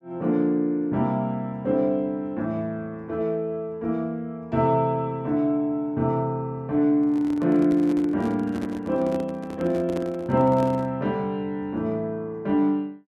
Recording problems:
handling noise; from 7 to 11 s; peak -4 dB vs average level

